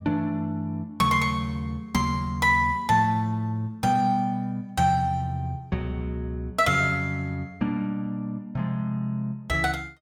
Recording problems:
none

